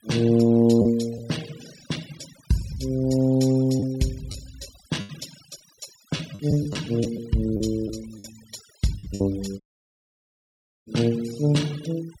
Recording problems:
noise reduction artefacts; signal-to-artefact ratio 19 dB
packet loss; 6% of the sound replaced, filled with the last packet
dropout; at 9.5 s for 1.5 s

